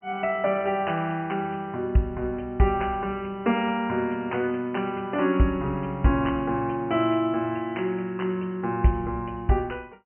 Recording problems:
treble missing; nothing above 3 kHz

